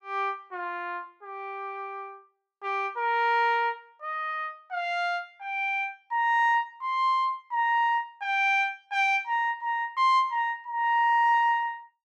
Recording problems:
none

